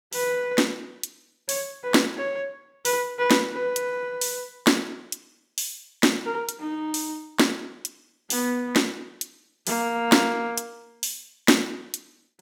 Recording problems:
none

